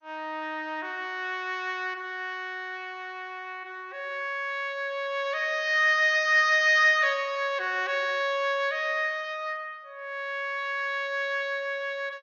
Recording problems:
codec artefacts; MP2, log-spectral distance 3 dB, nothing above 5.7 kHz

